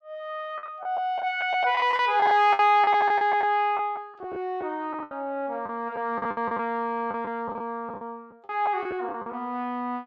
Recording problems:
lost packets; 12% of the sound replaced, filled with the last packet

